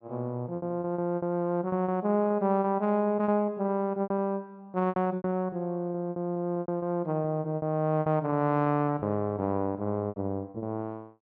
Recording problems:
packet loss; 13% of the sound replaced, filled with repeated pitch periods

